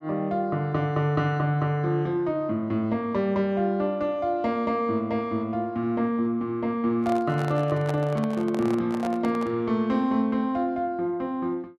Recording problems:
microphone handling noise; from 7 to 9.5 s; peak -3 dB vs average level

